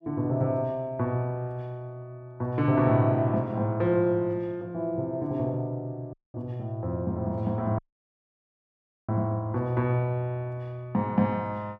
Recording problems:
audio cutting out; at 6 s and at 8 s for 1.5 s

